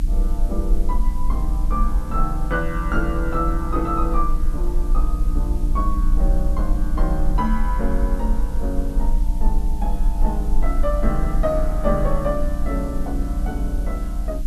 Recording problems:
mains hum; 60 Hz, harmonics up to 300 Hz, SNR 5 dB
background hiss; slope +1 dB per octave, SNR 21 dB
rumble; below 44 Hz, SNR -2 dB

